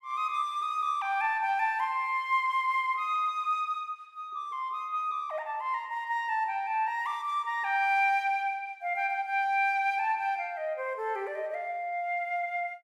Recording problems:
none

